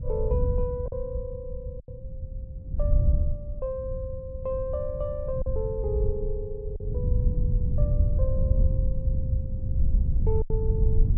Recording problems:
wind on the microphone; below 88 Hz, SNR -6 dB
packet loss; 3% of the sound replaced, filled with silence

